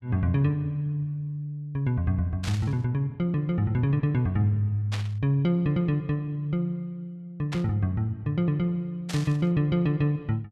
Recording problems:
burst of static; 4 times, first at 2.5 s; peak -5 dB vs average level

